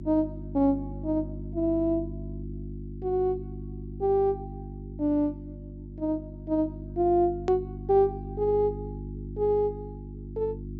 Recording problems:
treble missing; nothing above 8 kHz
hum; 50 Hz, harmonics up to 350 Hz, SNR 11 dB
hard cut with a click; at 7.5 s

